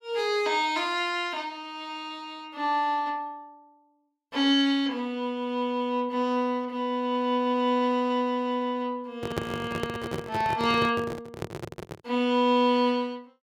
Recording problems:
microphone handling noise; from 9 to 12 s; peak +1 dB vs average level

